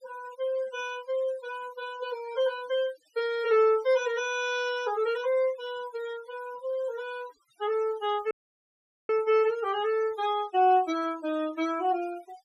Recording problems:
denoising artefacts; signal-to-artefact ratio 19 dB
audio cutting out; at 8.5 s for 1 s

